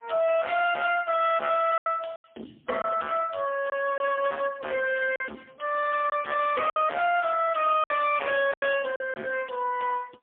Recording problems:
phone line; 320 Hz to 2.3 kHz, AMR-NB, then MP3
distorted audio; hard clipping, signal-to-distortion ratio 6 dB
packet loss; 5% of the sound replaced, filled with silence

